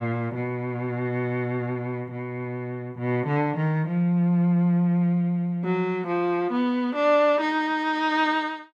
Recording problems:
none

